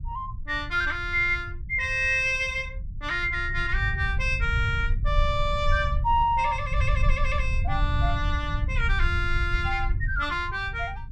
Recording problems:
low-frequency rumble; below 82 Hz, SNR 4 dB

